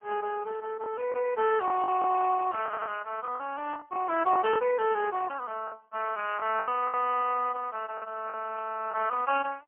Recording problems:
phone line; 280 Hz to 3.1 kHz, AMR-NB, then MP3
packet loss; 6% of the sound replaced, filled with the last packet
audio stuttering; at 2.5 s

